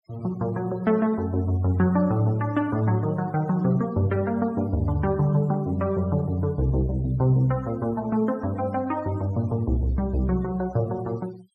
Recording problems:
denoising artefacts; signal-to-artefact ratio 26 dB

